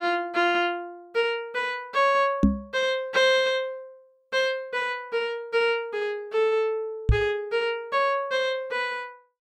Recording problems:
microphone thump; at 2.5 s and at 7 s; peak +9 dB vs average level

